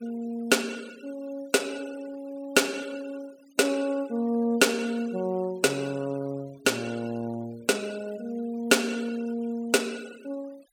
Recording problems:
noise reduction artefacts; signal-to-artefact ratio 21 dB

